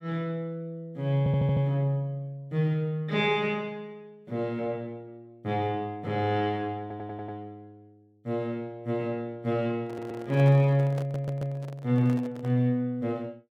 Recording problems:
stutter; 4 times, first at 1 s
microphone handling noise; from 10 to 13 s; peak -8 dB vs average level

